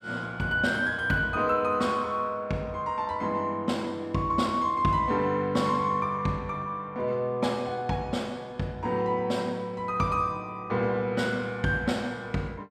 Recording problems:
none

